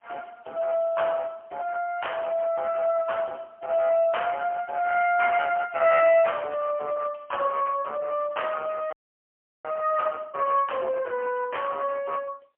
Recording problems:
telephone audio; 320 Hz to 3.1 kHz, AMR-NB, then MP3
distortion; hard clipping, signal-to-distortion ratio 12 dB
audio freezing; at 9 s for 0.5 s

